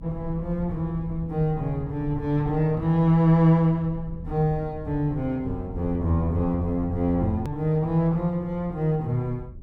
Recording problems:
low-frequency rumble; below 96 Hz, SNR 15 dB
edit click; at 7.5 s

